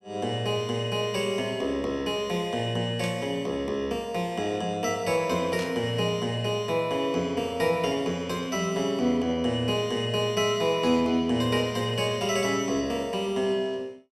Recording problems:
static burst; at 3 s and at 5.5 s; peak -7 dB vs average level

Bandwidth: 15.5 kHz